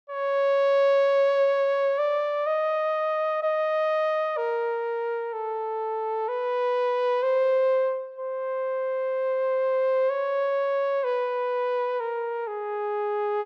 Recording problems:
none

